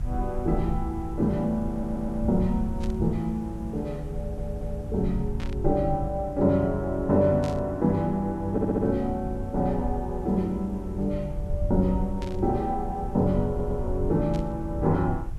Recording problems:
hiss; slope -6 dB per octave, SNR 26 dB
low-frequency rumble; below 84 Hz, SNR 8 dB
stutter; 4 times, first at 1.5 s
burst of static; 5 times, first at 3 s; peak -10 dB vs average level

